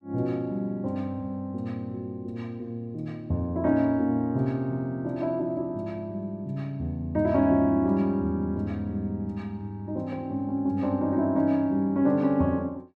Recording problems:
none

